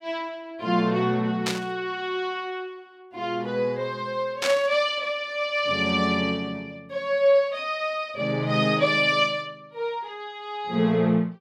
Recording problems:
static burst; at 1.5 s and at 4.5 s; peak +2 dB vs average level

